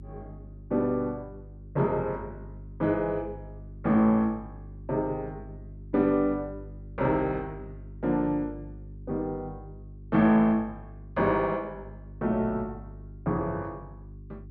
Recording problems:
hum; 50 Hz, harmonics up to 400 Hz, SNR 17 dB

